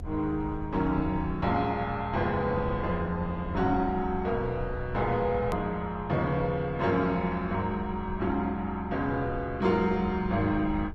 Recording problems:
lossy codec; Opus, log-spectral distance 2 dB, nothing above 13.1 kHz
rumble; below 84 Hz, SNR 12 dB
edit click; at 5.5 s

